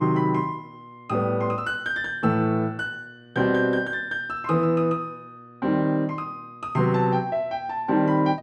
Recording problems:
hum; 60 Hz, harmonics up to 1.3 kHz, SNR 25 dB

